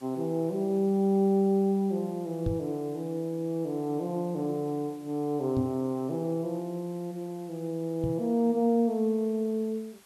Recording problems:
background hiss; slope -1 dB per octave, SNR 27 dB
microphone bump; at 2.5 s, at 5.5 s and at 8 s; peak +2 dB vs average level

